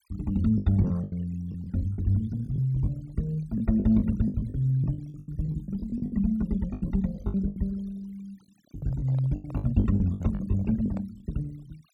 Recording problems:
noise reduction artefacts; signal-to-artefact ratio 26 dB
packet loss; 15% of the sound replaced, filled with the last packet
microphone handling noise; from 8.5 to 11 s; peak -10 dB vs average level

